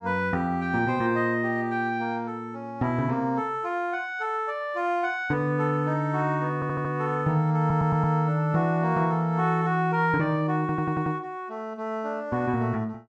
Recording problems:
stutter; at 6.5 s, at 7.5 s and at 11 s

